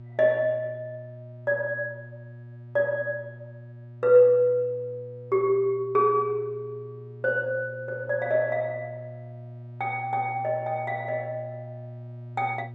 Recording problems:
electrical hum; 60 Hz, harmonics up to 600 Hz, SNR 17 dB

